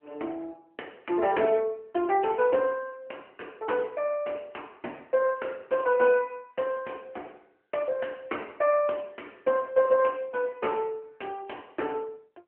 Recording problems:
telephone audio; 280 Hz to 3 kHz, AMR-NB

